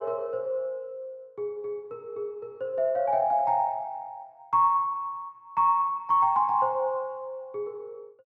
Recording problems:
none

